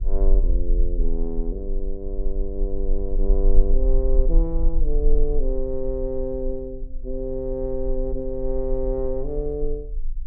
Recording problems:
rumble; below 34 Hz, strongest tone 20 Hz, SNR -2 dB

